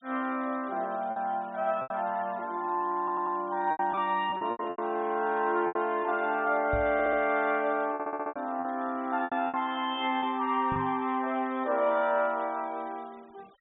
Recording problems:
low-pass filter; nothing above 4 kHz
denoising artefacts; signal-to-artefact ratio 26 dB
lost packets; 7% of the sound replaced, filled with repeated pitch periods
audio stuttering; at 3 s, at 7 s and at 8 s
microphone bump; at 6.5 s and at 11 s; peak -2 dB vs average level

